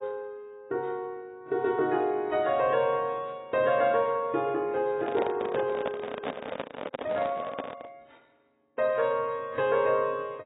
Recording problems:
lossy compression; AAC, log-spectral distance 2 dB, nothing above 3.2 kHz
handling noise; from 5 to 8 s; peak 0 dB vs average level

